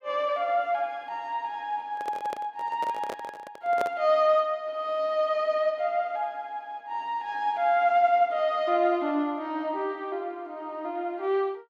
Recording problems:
microphone handling noise; from 2 to 4 s; peak -1 dB vs average level

